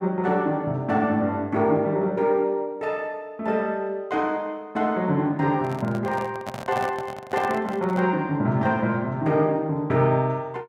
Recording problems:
handling noise; from 5.5 to 8 s; peak -4 dB vs average level

